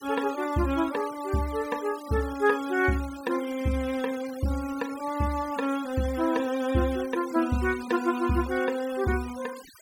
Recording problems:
denoising artefacts; signal-to-artefact ratio 17 dB

